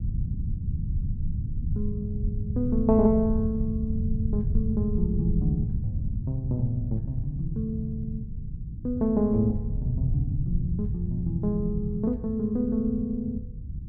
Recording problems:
low-frequency rumble; below 120 Hz, SNR 3 dB

